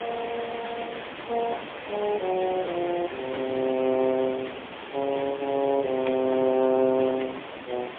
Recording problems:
phone line; 240 Hz to 3.4 kHz, AMR-NB, then MP3
background hiss; SNR 10 dB

